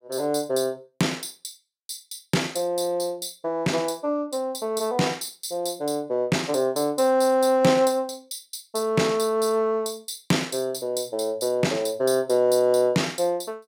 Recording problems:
none

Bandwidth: 16 kHz